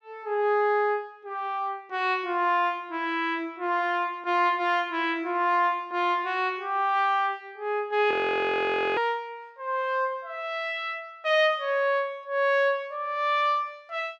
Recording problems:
audio freezing; at 8 s for 1 s

